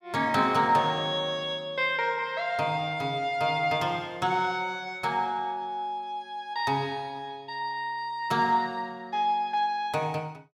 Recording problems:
none

